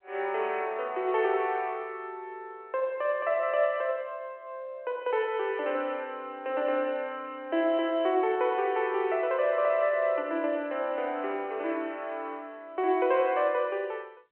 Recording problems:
telephone audio; 300 Hz to 3.2 kHz, G.711

